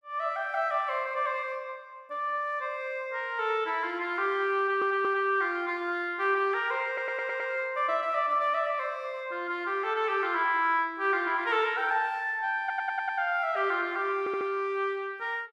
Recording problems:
stutter; 4 times, first at 4.5 s

